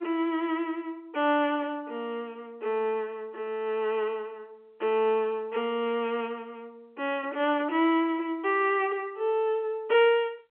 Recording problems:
telephone audio; 260 Hz to 3.3 kHz, G.711

